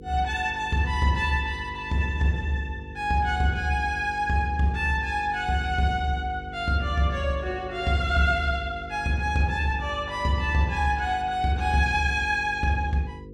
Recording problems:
mains hum; 50 Hz, harmonics up to 500 Hz, SNR 17 dB

